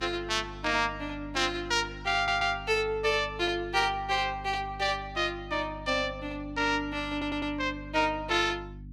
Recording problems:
hum; 50 Hz, harmonics up to 300 Hz, SNR 16 dB
stutter; at 2 s and at 7 s

